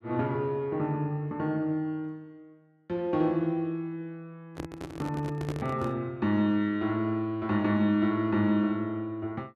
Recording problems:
microphone handling noise; from 4.5 to 6 s; peak -2 dB vs average level

